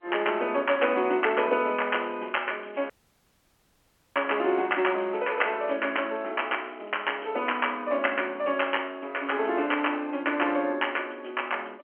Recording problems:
telephone audio; 240 Hz to 3.2 kHz, G.711
crackle; from 0.5 to 6 s and from 6 to 7.5 s; loose cable, SNR 27 dB
dropout; at 3 s for 1.5 s

